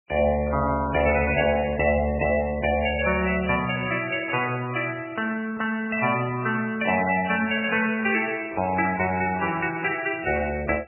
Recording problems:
lossy compression; MP3, log-spectral distance 5 dB, nothing above 2.4 kHz

